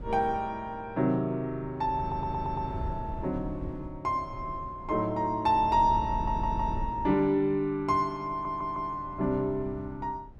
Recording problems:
wind on the microphone; below 140 Hz, SNR 11 dB
stutter; at 2 s, at 6 s and at 8.5 s

